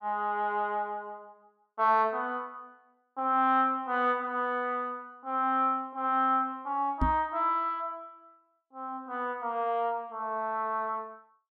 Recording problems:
knock on the microphone; at 7 s; peak +4 dB vs average level

